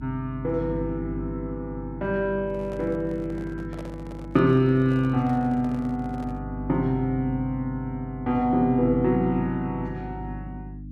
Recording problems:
hum; 50 Hz, harmonics up to 300 Hz, SNR 11 dB
microphone handling noise; from 2.5 to 6.5 s; peak -10 dB vs average level

